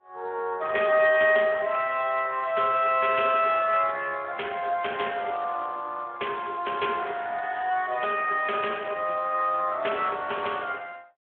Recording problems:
telephone audio; 340 Hz to 3.4 kHz, Speex

